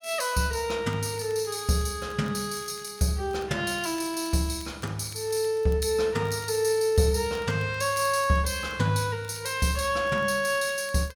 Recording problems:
crackle; vinyl, SNR 27 dB

